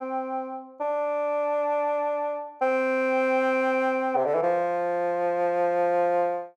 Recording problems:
none

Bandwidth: 13 kHz